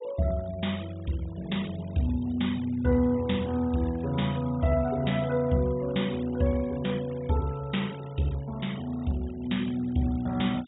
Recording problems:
low-pass filter; nothing above 4 kHz
noise reduction artefacts; signal-to-artefact ratio 21 dB

